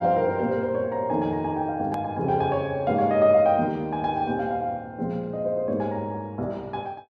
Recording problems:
edit click; at 2 s

